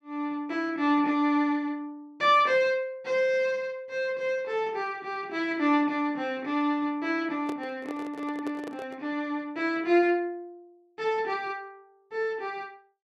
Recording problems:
microphone handling noise; from 7.5 to 9 s; peak -5 dB vs average level

